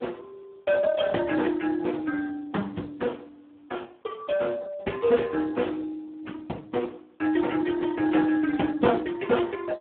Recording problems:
telephone audio; 130 Hz to 2.7 kHz, Speex
background hiss; SNR 41 dB

